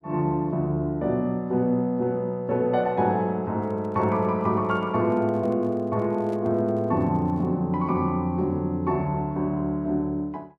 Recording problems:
handling noise; from 3.5 to 7.5 s; peak -12 dB vs average level

